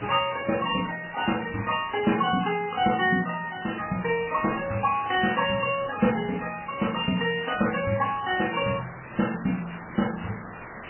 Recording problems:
lossy compression; MP3, log-spectral distance 20 dB, nothing above 2.5 kHz
background hiss; SNR 15 dB

